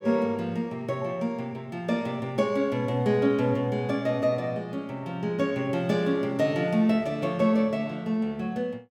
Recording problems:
none

